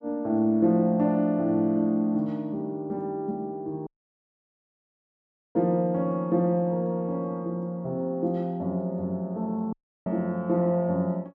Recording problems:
dropout; at 4 s for 1.5 s and at 9.5 s

